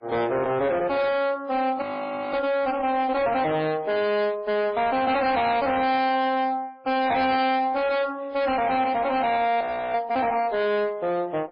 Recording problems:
lossy compression; MP3, then MP3, log-spectral distance 2 dB, nothing above 4.2 kHz
distortion; hard clipping, uneven, signal-to-distortion ratio 7 dB
frozen audio; at 2 s for 0.5 s and at 9.5 s

